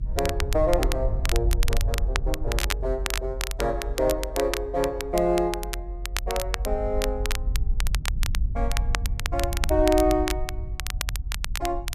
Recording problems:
rumble; below 60 Hz, SNR 3 dB
crackle; vinyl, SNR 6 dB

